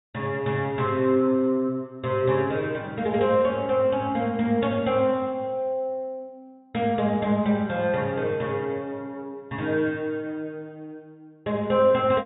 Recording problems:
treble cut off; nothing above 4 kHz

